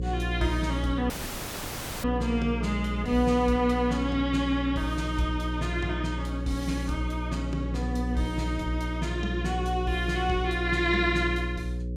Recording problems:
electrical hum; 60 Hz, harmonics up to 540 Hz, SNR 4 dB
audio cutting out; at 1 s for 1 s

